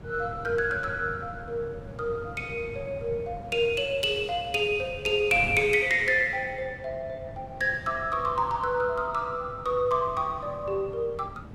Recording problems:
wind on the microphone; below 310 Hz, SNR 16 dB

